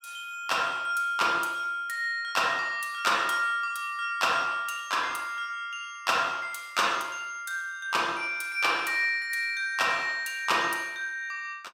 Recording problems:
none

